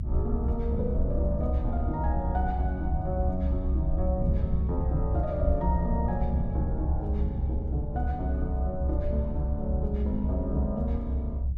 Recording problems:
low-frequency rumble; below 74 Hz, strongest tone 64 Hz, SNR -3 dB

